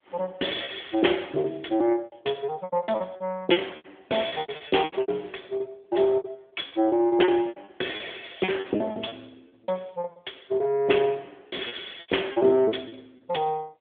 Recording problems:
phone line; 280 Hz to 3.5 kHz, AMR-NB
lost packets; 15% of the sound replaced, filled with repeated pitch periods

